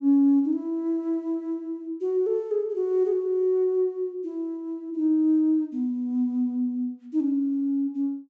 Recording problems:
treble missing; nothing above 8 kHz

